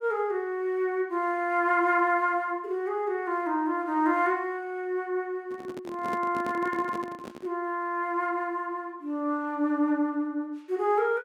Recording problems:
microphone handling noise; from 5.5 to 7.5 s; peak -4 dB vs average level

